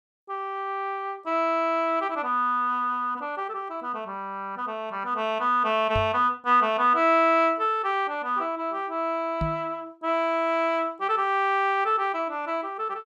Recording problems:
knock on the microphone; at 6 s and at 9.5 s; peak -1 dB vs average level

